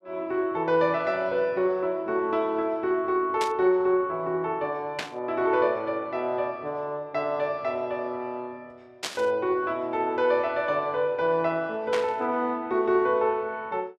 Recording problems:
static burst; 4 times, first at 3.5 s; peak 0 dB vs average level

